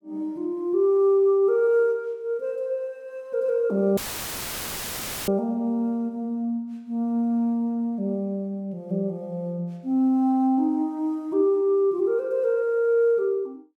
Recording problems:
audio cutting out; at 4 s for 1.5 s; filled with static

